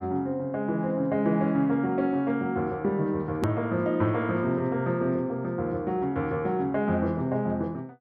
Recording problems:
click at an edit; at 3.5 s

